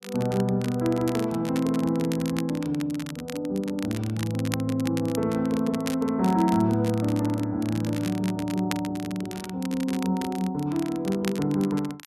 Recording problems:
crackling; vinyl, SNR 14 dB

